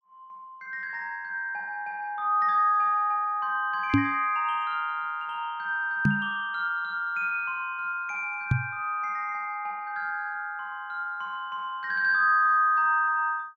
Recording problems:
microphone thump; at 4 s, at 6 s and at 8.5 s; peak +8 dB vs average level

